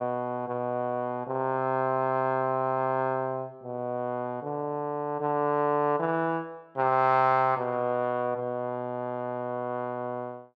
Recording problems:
none

